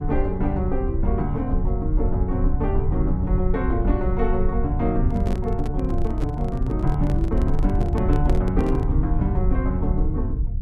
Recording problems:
low-frequency rumble; below 78 Hz, SNR -1 dB
microphone handling noise; from 5 to 9 s; peak 0 dB vs average level

